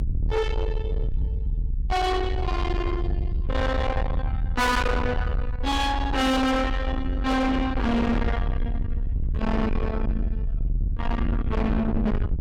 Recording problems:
distorted audio; soft clipping, signal-to-distortion ratio 6 dB
rumble; below 140 Hz, SNR 2 dB

